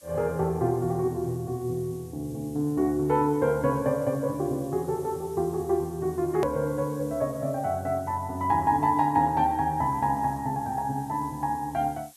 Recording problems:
hiss; SNR 24 dB
click at an edit; at 6.5 s

